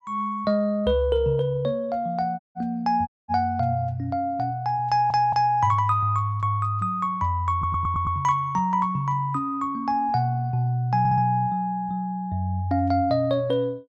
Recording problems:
audio cutting out; at 2.5 s and at 3 s
audio stuttering; at 5 s, at 7.5 s and at 11 s

